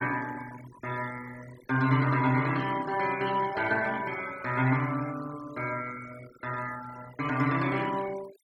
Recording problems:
denoising artefacts; signal-to-artefact ratio 16 dB

